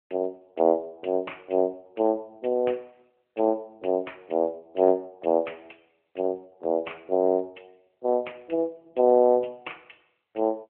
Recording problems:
telephone audio; 300 Hz to 3.1 kHz, AMR-NB

